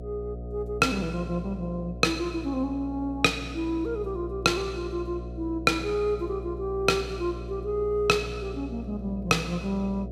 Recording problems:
hum; 60 Hz, harmonics up to 720 Hz, SNR 10 dB

